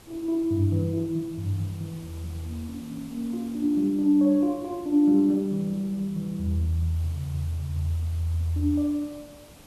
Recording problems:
hiss; SNR 22 dB

